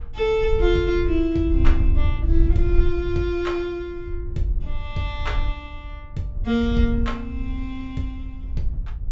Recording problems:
treble missing; nothing above 8 kHz
wind noise; below 62 Hz, SNR 1 dB

